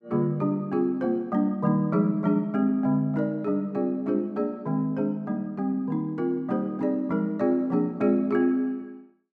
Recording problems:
none

